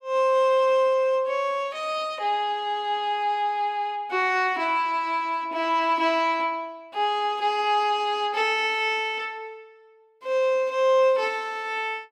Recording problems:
none

